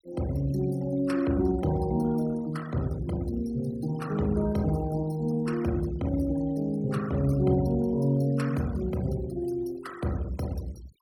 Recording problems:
denoising artefacts; signal-to-artefact ratio 21 dB

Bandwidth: 17.5 kHz